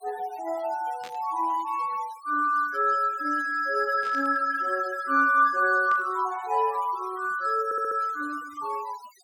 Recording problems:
noise reduction artefacts; signal-to-artefact ratio 24 dB
burst of static; at 1 s, at 4 s and at 6 s; peak -14 dB vs average level
audio stuttering; at 7.5 s

